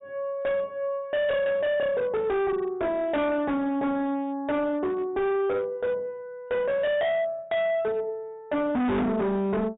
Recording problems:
low-pass filter; nothing above 4 kHz
distortion; hard clipping, signal-to-distortion ratio 6 dB

